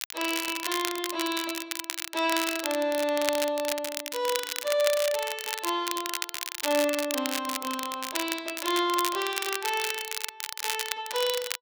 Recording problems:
crackling; vinyl, SNR 3 dB

